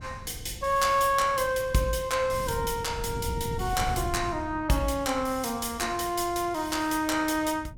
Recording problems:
wind noise; below 150 Hz, SNR 13 dB

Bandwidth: 17 kHz